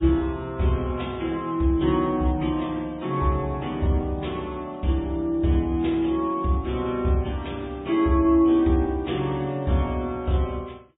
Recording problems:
low-pass filter; nothing above 3.6 kHz
codec artefacts; MP3, log-spectral distance 2 dB

